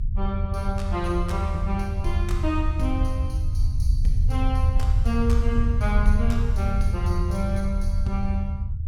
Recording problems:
low-frequency rumble; below 80 Hz, SNR -4 dB

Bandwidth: 17.5 kHz